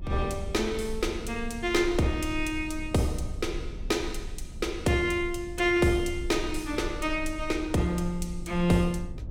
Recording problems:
low-frequency rumble; below 66 Hz, strongest tone 20 Hz, SNR 12 dB

